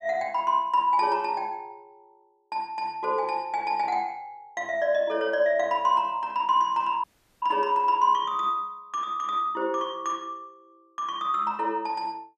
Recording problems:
dropout; at 7 s

